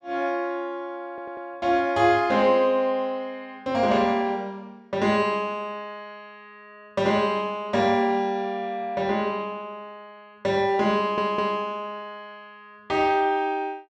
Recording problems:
stutter; at 1 s and at 11 s

